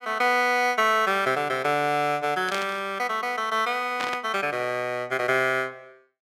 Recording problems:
static burst; at 2.5 s and at 4 s; peak -4 dB vs average level

